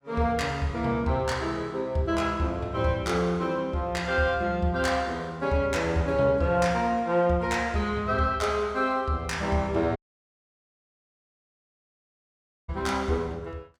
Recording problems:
audio cutting out; at 10 s for 2.5 s

